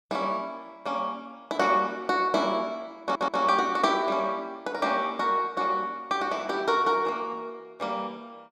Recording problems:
stutter; at 3 s

